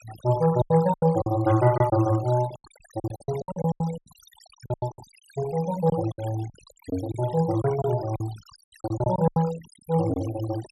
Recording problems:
denoising artefacts; signal-to-artefact ratio 19 dB
lost packets; 16% of the sound replaced, filled with silence

